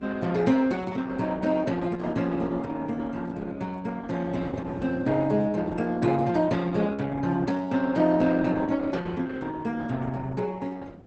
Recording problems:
codec artefacts; Opus, log-spectral distance 3 dB, nothing above 8.2 kHz
wind noise; below 350 Hz, SNR 19 dB

